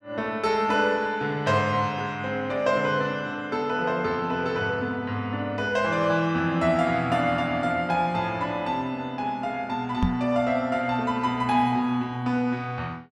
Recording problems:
microphone bump; at 10 s; peak +4 dB vs average level

